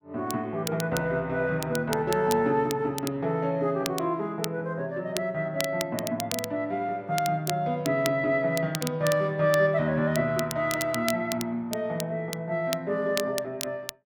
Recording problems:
crackling; vinyl, SNR 10 dB

